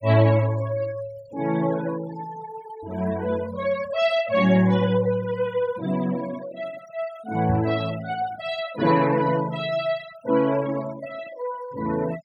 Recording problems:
denoising artefacts; signal-to-artefact ratio 18 dB
microphone bump; at 7.5 s; peak -1 dB vs average level

